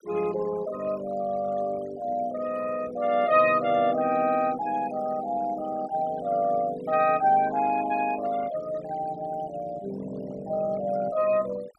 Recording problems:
denoising artefacts; signal-to-artefact ratio 21 dB

